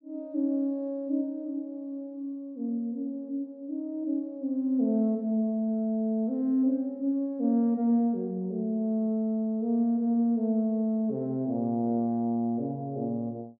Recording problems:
none

